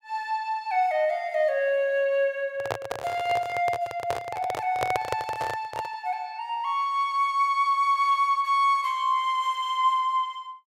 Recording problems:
microphone handling noise; from 2.5 to 6 s; peak +2 dB vs average level

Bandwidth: 16 kHz